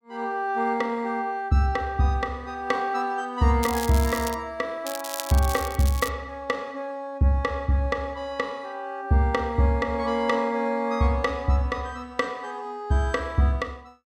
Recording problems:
crackle; at 3.5 s and from 5 to 6 s; loose cable, SNR 10 dB

